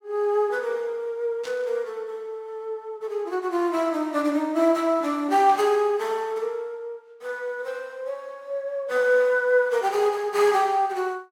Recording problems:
burst of static; at 1.5 s and at 5.5 s; peak -11 dB vs average level

